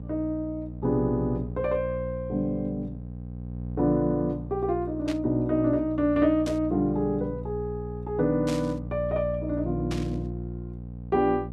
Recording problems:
hum; 60 Hz, harmonics up to 540 Hz, SNR 9 dB
burst of static; 4 times, first at 5 s; peak -5 dB vs average level

